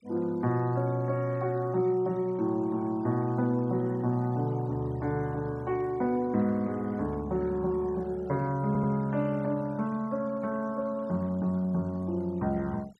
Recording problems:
denoising artefacts; signal-to-artefact ratio 26 dB
stutter; at 8.5 s

